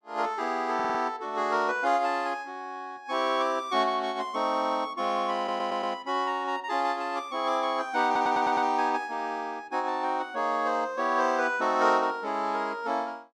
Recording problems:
audio stuttering; at 1 s, at 5.5 s and at 8 s

